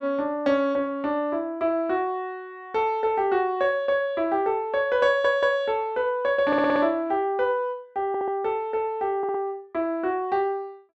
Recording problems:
stutter; 4 times, first at 5 s

